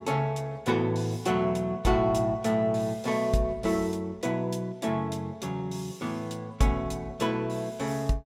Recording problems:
none

